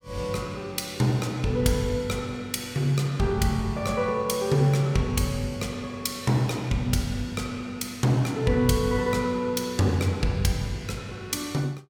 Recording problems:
none

